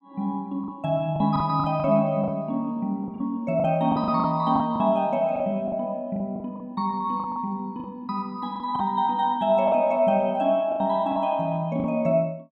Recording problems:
lost packets; 9% of the sound replaced, filled with the last packet

